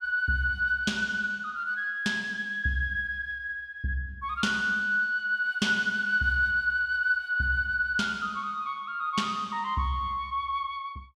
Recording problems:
none

